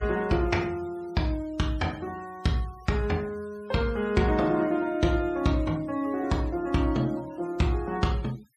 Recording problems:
noise reduction artefacts; signal-to-artefact ratio 24 dB

